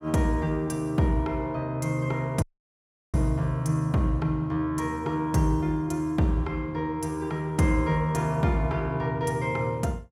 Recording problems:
dropout; at 2.5 s for 0.5 s

